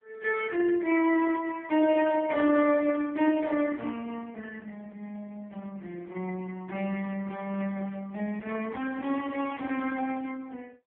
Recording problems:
telephone audio; 220 Hz to 3.2 kHz, AMR-NB

